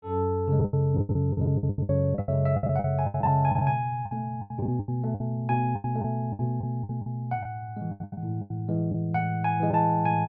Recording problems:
lost packets; 17% of the sound replaced, filled with the last packet

